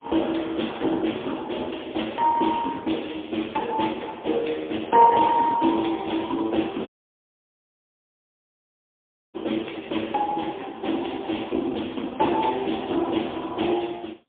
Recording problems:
phone line; 260 Hz to 3.4 kHz, AMR-NB, then MP3
audio cutting out; at 7 s for 2.5 s

